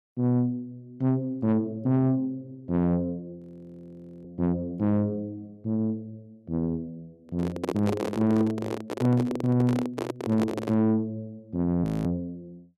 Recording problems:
distorted audio; soft clipping, signal-to-distortion ratio 11 dB
frozen audio; at 3.5 s for 1 s and at 12 s
microphone handling noise; from 7.5 to 11 s; peak +2 dB vs average level

